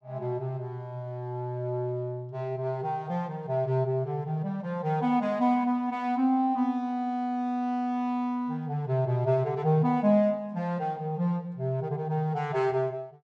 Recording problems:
none

